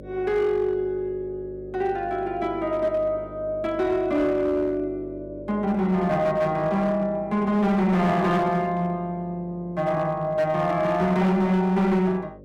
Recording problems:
distortion; hard clipping, uneven, signal-to-distortion ratio 11 dB
hum; 50 Hz, harmonics up to 600 Hz, SNR 19 dB

